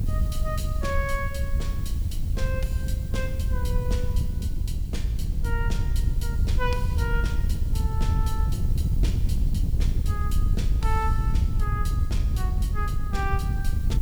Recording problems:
background hiss; slope +1 dB per octave, SNR 16 dB
rumble; below 74 Hz, strongest tone 72 Hz, SNR 3 dB
wind noise; below 90 Hz, SNR -8 dB

